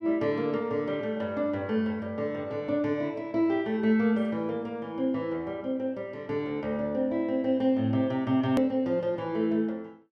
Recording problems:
hard cut with a click; at 8.5 s

